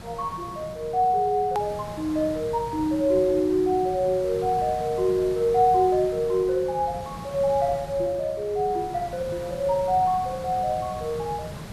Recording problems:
background hiss; slope -5 dB per octave, SNR 15 dB
click at an edit; at 1.5 s

